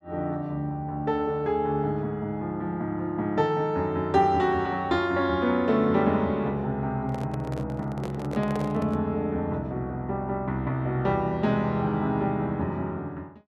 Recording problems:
handling noise; from 7 to 9 s; peak -4 dB vs average level

